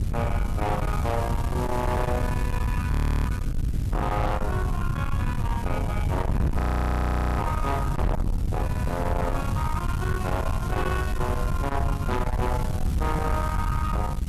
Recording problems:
distorted audio; soft clipping, signal-to-distortion ratio 9 dB
hiss; slope -1 dB per octave, SNR 14 dB
wind on the microphone; below 150 Hz, SNR -2 dB
frozen audio; at 3 s and at 6.5 s for 1 s

